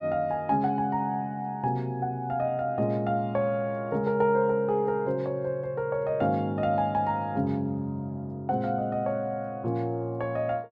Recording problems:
none

